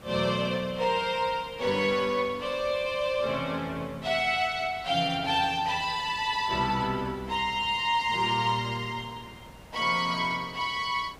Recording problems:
hiss; slope -5 dB per octave, SNR 22 dB

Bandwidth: 15.5 kHz